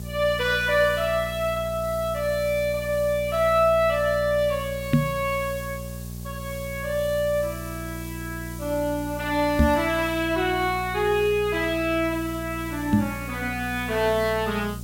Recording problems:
hum; 60 Hz, harmonics up to 600 Hz, SNR 12 dB
background hiss; SNR 18 dB
microphone bump; at 5 s, at 9.5 s and at 13 s; peak +9 dB vs average level

